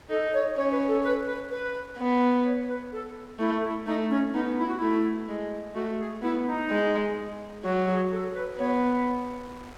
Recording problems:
wind on the microphone; below 1.8 kHz, SNR 24 dB

